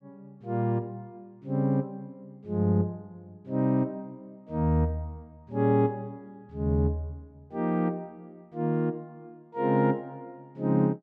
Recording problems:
none

